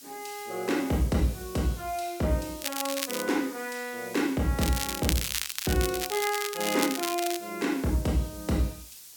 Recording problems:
background hiss; SNR 15 dB
crackling; at 2.5 s and from 4.5 to 7.5 s; loose cable, SNR 3 dB

